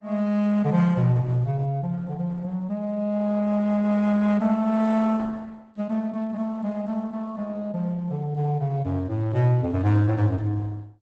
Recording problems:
codec artefacts; Opus, log-spectral distance 2 dB, nothing above 8 kHz

